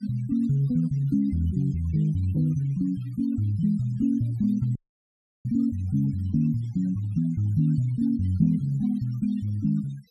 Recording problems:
denoising artefacts; signal-to-artefact ratio 25 dB
audio cutting out; at 5 s for 0.5 s

